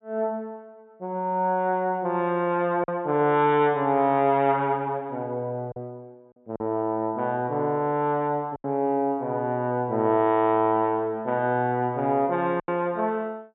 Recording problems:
low-pass filter; nothing above 4 kHz
lost packets; 2% of the sound replaced, filled with silence

